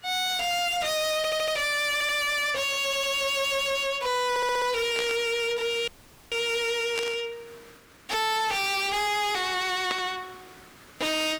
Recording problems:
distortion; soft clipping, signal-to-distortion ratio 5 dB
background hiss; SNR 25 dB
audio stuttering; 4 times, first at 1 s
static burst; at 5 s, at 7 s and at 10 s; peak -2 dB vs average level
audio cutting out; at 6 s

